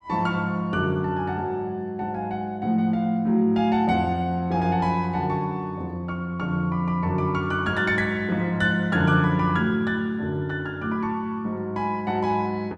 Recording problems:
none

